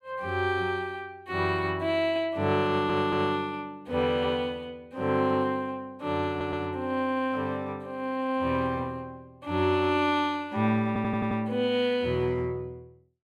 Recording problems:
audio stuttering; at 2.5 s, at 6.5 s and at 11 s

